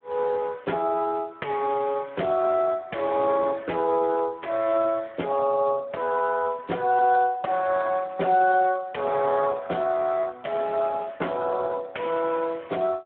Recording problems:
phone line; 260 Hz to 3 kHz, Speex

